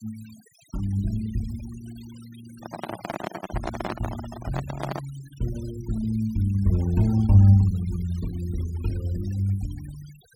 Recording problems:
noise reduction artefacts; signal-to-artefact ratio 21 dB
handling noise; from 2.5 to 5 s; peak -2 dB vs average level

